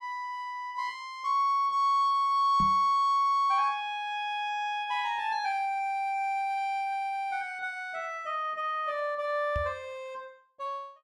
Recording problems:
microphone bump; at 2.5 s and at 9.5 s; peak -3 dB vs average level

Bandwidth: 15 kHz